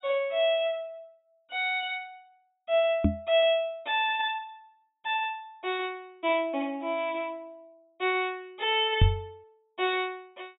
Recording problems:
treble missing; nothing above 4 kHz
microphone thump; at 3 s and at 9 s; peak +10 dB vs average level

